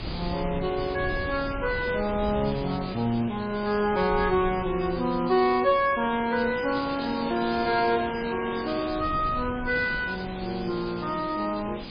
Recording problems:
codec artefacts; MP3, log-spectral distance 9 dB, nothing above 4.2 kHz
background hiss; SNR 11 dB
wind noise; below 160 Hz, SNR 15 dB

